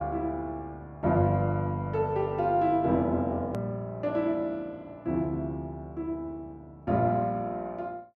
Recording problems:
edit click; at 3.5 s

